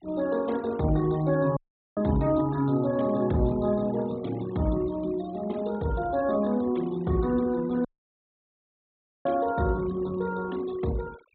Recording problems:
treble cut off; nothing above 4 kHz
denoising artefacts; signal-to-artefact ratio 21 dB
dropout; at 1.5 s and at 8 s for 1.5 s

